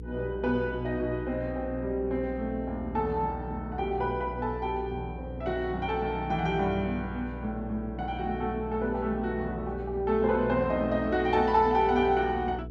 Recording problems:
hum; 60 Hz, harmonics up to 480 Hz, SNR 11 dB

